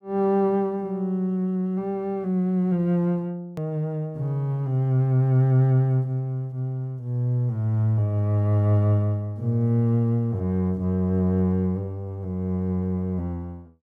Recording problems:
click at an edit; at 3.5 s

